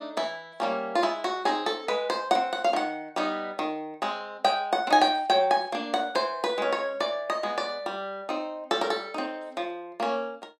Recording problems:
none

